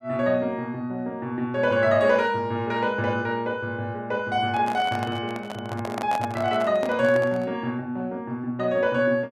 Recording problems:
microphone handling noise; from 4.5 to 7.5 s; peak -2 dB vs average level

